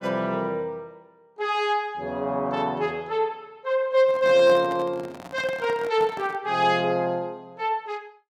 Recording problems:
microphone handling noise; from 4 to 6.5 s; peak -8 dB vs average level

